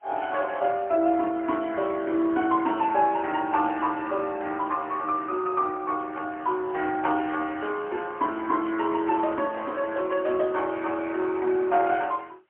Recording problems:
phone line; 260 Hz to 3.1 kHz, AMR-NB, then MP3
background hiss; SNR 46 dB

